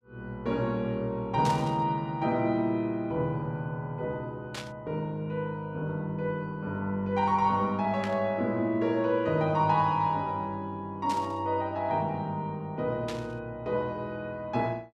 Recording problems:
static burst; 5 times, first at 1.5 s; peak -4 dB vs average level

